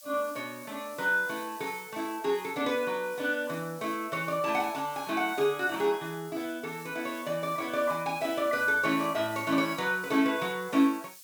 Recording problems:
hiss; SNR 18 dB

